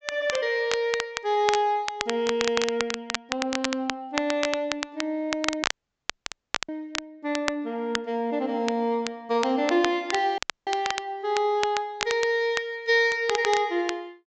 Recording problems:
treble cut off; nothing above 8 kHz
crackle; vinyl, SNR 6 dB
dropout; at 5.5 s for 1 s and at 10 s

